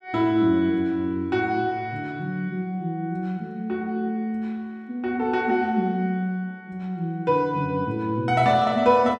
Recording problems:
none

